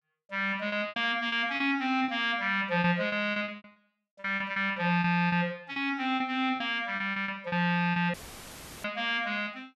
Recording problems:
lost packets; 12% of the sound replaced, filled with repeated pitch periods
audio cutting out; at 8 s for 0.5 s; filled with static

